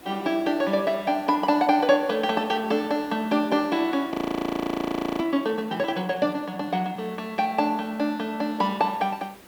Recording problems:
hiss; slope -5 dB per octave, SNR 23 dB
audio freezing; at 4 s for 1 s

